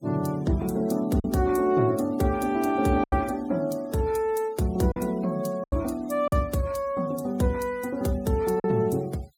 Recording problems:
noise reduction artefacts; signal-to-artefact ratio 26 dB
packet loss; 3% of the sound replaced, filled with silence

